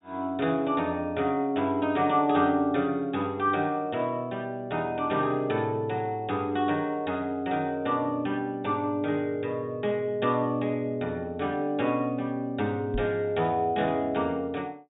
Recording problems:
treble cut off; nothing above 4 kHz
microphone thump; at 13 s; peak -3 dB vs average level

